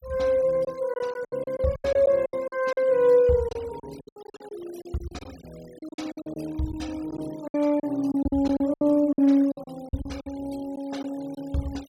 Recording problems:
noise reduction artefacts; signal-to-artefact ratio 25 dB
lost packets; 14% of the sound replaced, filled with silence

